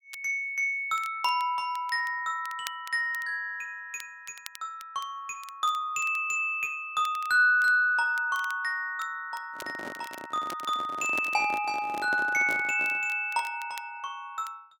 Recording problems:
crackle; vinyl, SNR 22 dB
microphone handling noise; from 9.5 to 13 s; peak -6 dB vs average level

